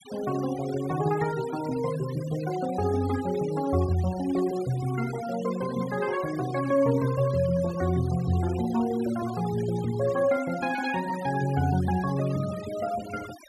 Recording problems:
noise reduction artefacts; signal-to-artefact ratio 16 dB

